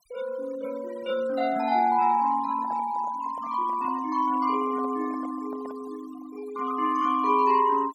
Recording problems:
noise reduction artefacts; signal-to-artefact ratio 20 dB
handling noise; from 2.5 to 6 s; peak -13 dB vs average level

